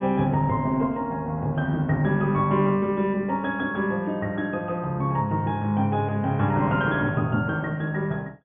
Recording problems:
treble cut off; nothing above 3.5 kHz

